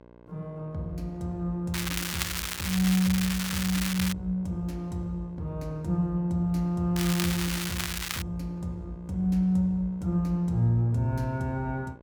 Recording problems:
hum; 60 Hz, harmonics up to 1.7 kHz, SNR 22 dB
crackle; from 1.5 to 4 s and from 7 to 8 s; loose cable, SNR 3 dB

